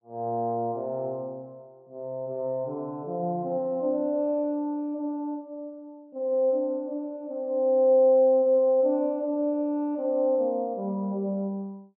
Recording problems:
none

